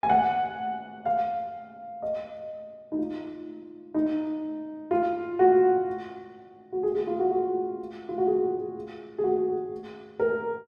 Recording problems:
none

